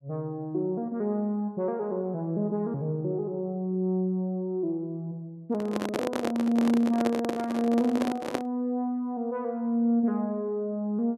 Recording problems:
handling noise; from 5.5 to 8.5 s; peak +3 dB vs average level

